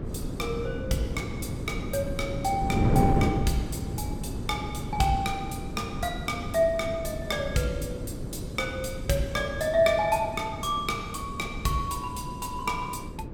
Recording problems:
wind noise; below 310 Hz, SNR 4 dB

